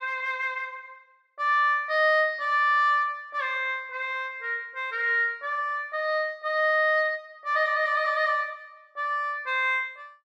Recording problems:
none

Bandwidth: 12 kHz